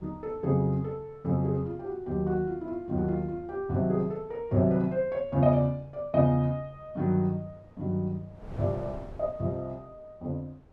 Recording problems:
wind noise; below 440 Hz, SNR 22 dB

